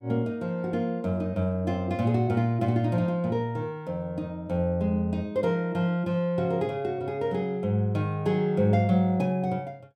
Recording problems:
none

